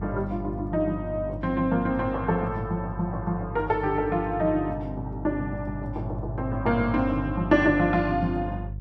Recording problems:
hum; 50 Hz, harmonics up to 350 Hz, SNR 10 dB

